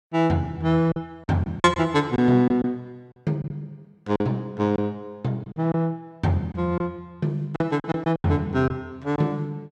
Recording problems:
packet loss; 7% of the sound replaced, filled with silence

